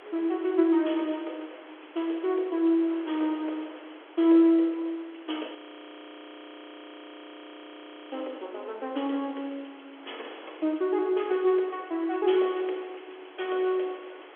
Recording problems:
phone line; 280 Hz to 3.4 kHz, G.711
hiss; SNR 23 dB
wind on the microphone; below 1.8 kHz, SNR 27 dB
audio freezing; at 5.5 s for 2.5 s

